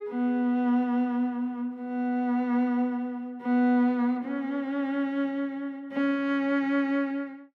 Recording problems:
none

